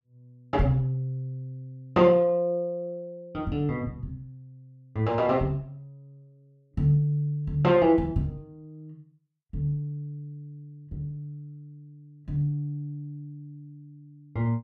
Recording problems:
none

